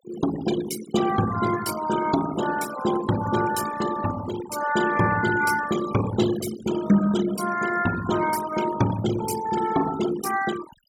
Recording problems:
denoising artefacts; signal-to-artefact ratio 10 dB

